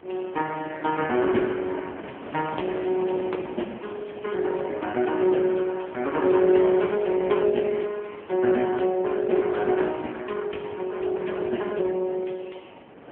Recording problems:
telephone audio; 220 Hz to 3.2 kHz, AMR-NB
wind noise; below 870 Hz, SNR 16 dB

